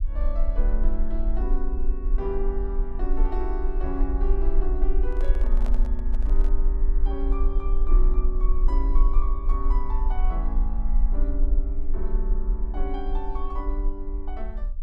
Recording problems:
low-frequency rumble; below 40 Hz, strongest tone 20 Hz, SNR -8 dB
microphone handling noise; from 5 to 6.5 s; peak -1 dB vs average level

